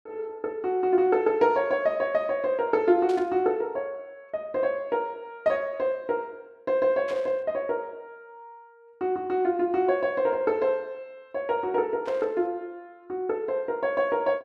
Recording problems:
static burst; at 3 s, at 7 s and at 12 s; peak -12 dB vs average level

